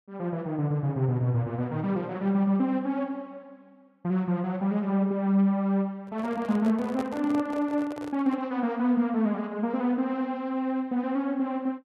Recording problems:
microphone handling noise; from 6 to 8.5 s; peak -5 dB vs average level

